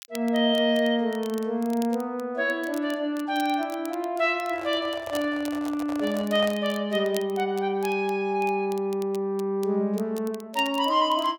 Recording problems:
crackling; vinyl, SNR 21 dB
handling noise; from 4.5 to 6.5 s; peak -7 dB vs average level

